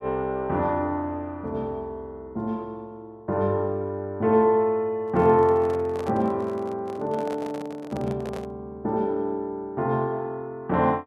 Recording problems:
handling noise; from 5 to 8.5 s; peak -7 dB vs average level

